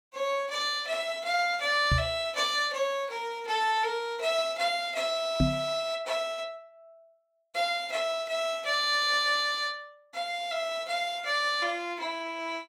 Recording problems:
microphone thump; at 2 s and at 5.5 s; peak +7 dB vs average level

